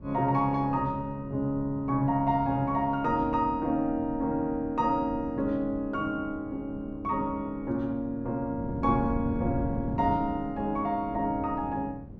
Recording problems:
wind noise; below 230 Hz, SNR 11 dB

